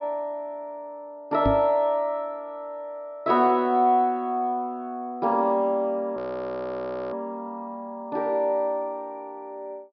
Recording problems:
treble missing; nothing above 5.5 kHz
microphone bump; at 1.5 s; peak +4 dB vs average level
frozen audio; at 6 s for 1 s

